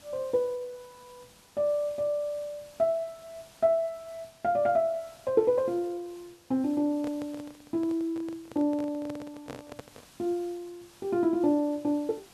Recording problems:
background hiss; slope -1 dB per octave, SNR 26 dB
microphone handling noise; from 7 to 10 s; peak -7 dB vs average level

